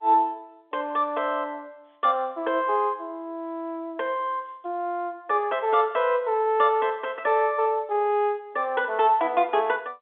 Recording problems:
telephone audio; 260 Hz to 3.6 kHz, G.711

